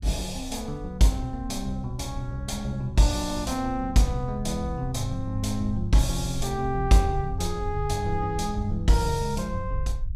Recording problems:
low-frequency rumble; below 68 Hz, SNR 10 dB

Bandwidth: 15.5 kHz